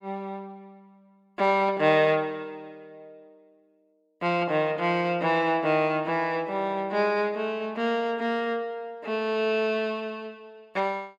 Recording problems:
none

